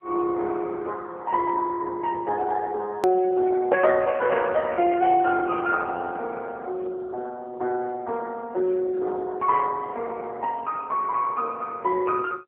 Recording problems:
telephone audio; 280 Hz to 2.8 kHz, AMR-NB
edit click; at 3 s

